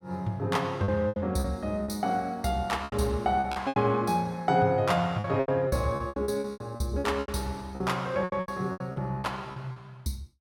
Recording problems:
lost packets; 14% of the sound replaced, filled with repeated pitch periods

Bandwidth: 17 kHz